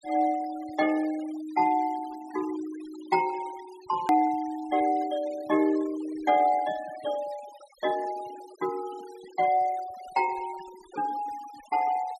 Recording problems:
noise reduction artefacts; signal-to-artefact ratio 20 dB
edit click; at 4 s

